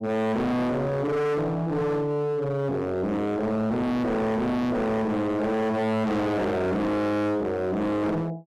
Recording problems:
distorted audio; hard clipping, signal-to-distortion ratio 6 dB

